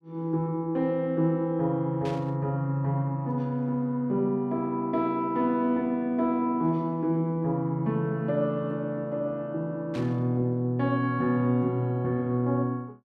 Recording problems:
static burst; at 2 s and at 10 s; peak -11 dB vs average level

